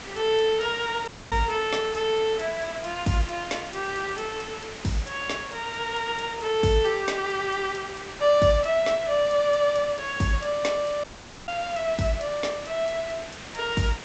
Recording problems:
low-pass filter; nothing above 8 kHz
background hiss; slope -3 dB per octave, SNR 13 dB
dropout; at 1 s and at 11 s

